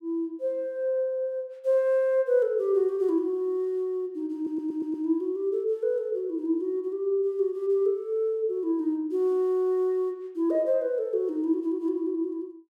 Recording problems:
stutter; at 4.5 s

